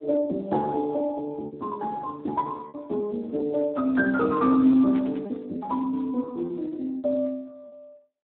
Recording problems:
phone line; 190 Hz to 2.4 kHz, Speex
lost packets; 6% of the sound replaced, filled with repeated pitch periods
static burst; at 5 s; peak -15 dB vs average level

